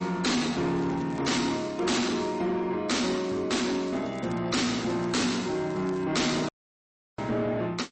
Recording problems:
lossy codec; MP3, log-spectral distance 4 dB, nothing above 8.2 kHz
distortion; soft clipping, signal-to-distortion ratio 7 dB
crackle; from 1 to 2.5 s, from 3 to 5 s and at 5.5 s; loose cable, SNR 25 dB
audio cutting out; at 6.5 s for 0.5 s

